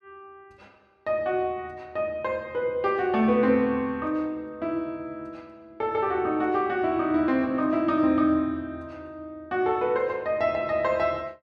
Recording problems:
none

